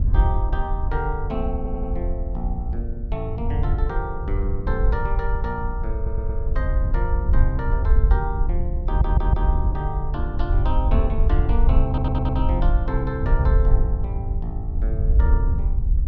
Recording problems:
wind on the microphone; below 68 Hz, SNR -5 dB
stutter; 4 times, first at 1.5 s

